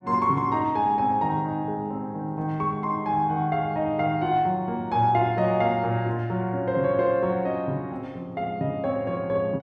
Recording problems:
none

